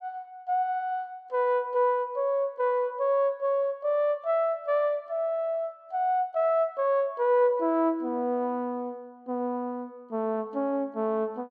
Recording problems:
none

